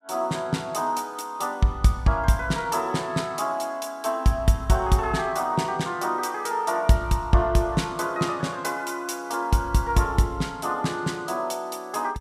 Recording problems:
none

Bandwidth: 15.5 kHz